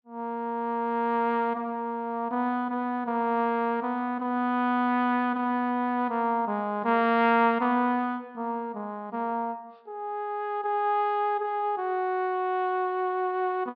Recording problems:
low-pass filter; nothing above 5.5 kHz

